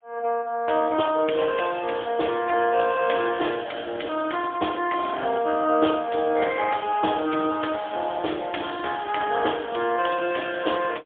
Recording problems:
telephone audio; 260 Hz to 3.4 kHz, AMR-NB, then MP3

